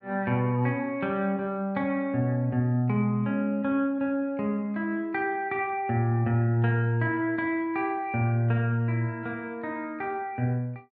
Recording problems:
none

